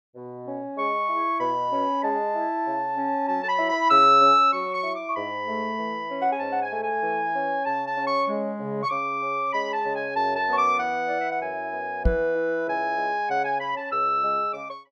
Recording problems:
microphone bump; at 12 s; peak +5 dB vs average level

